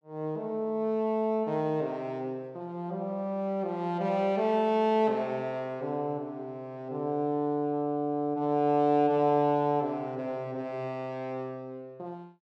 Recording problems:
none

